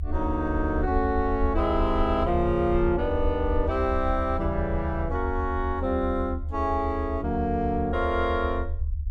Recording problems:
rumble; below 78 Hz, SNR 5 dB

